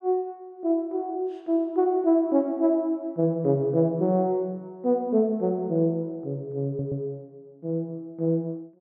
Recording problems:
stutter; at 6.5 s

